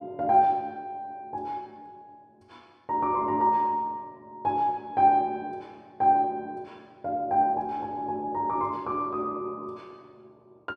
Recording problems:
none

